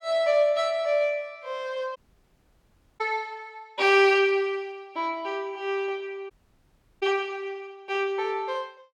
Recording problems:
dropout; at 2 s for 1 s and at 6.5 s for 0.5 s

